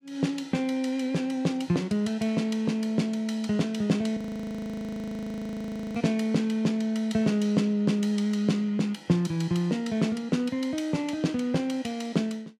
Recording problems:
audio freezing; at 4 s for 2 s

